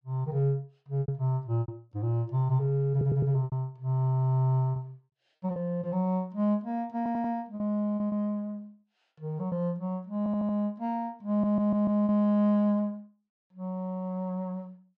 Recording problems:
lost packets; 5% of the sound replaced, filled with repeated pitch periods
stutter; 4 times, first at 3 s

